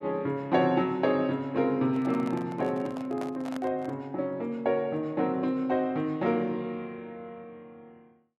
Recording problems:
handling noise; from 2 to 4 s; peak -7 dB vs average level

